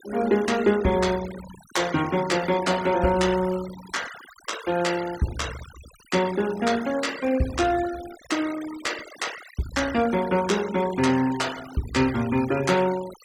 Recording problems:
noise reduction artefacts; signal-to-artefact ratio 15 dB

